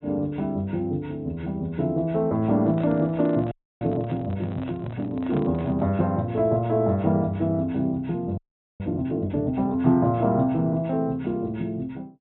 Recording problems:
treble missing; nothing above 3.9 kHz
handling noise; from 2.5 to 6 s; peak -7 dB vs average level
audio freezing; at 3.5 s and at 8.5 s

